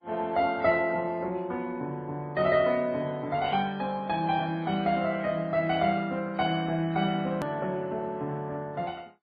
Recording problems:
codec artefacts; MP2, then MP3, log-spectral distance 2 dB, nothing above 13.1 kHz
click at an edit; at 7.5 s

